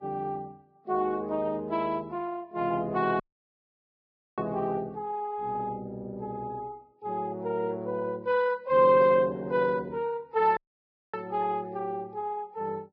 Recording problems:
lossy compression; Vorbis, then Vorbis, log-spectral distance 2 dB
audio cutting out; at 3 s for 1 s and at 11 s for 0.5 s

